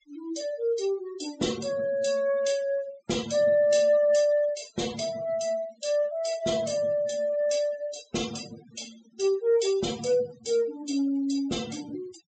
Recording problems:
treble missing; nothing above 8 kHz
noise reduction artefacts; signal-to-artefact ratio 18 dB

